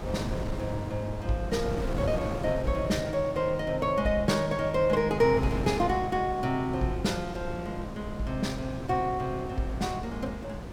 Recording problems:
wind noise; below 390 Hz, SNR 8 dB

